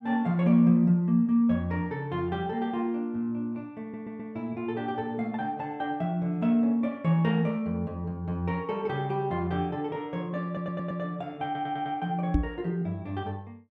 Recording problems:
audio stuttering; at 4 s, at 10 s and at 11 s
microphone thump; at 12 s; peak +7 dB vs average level

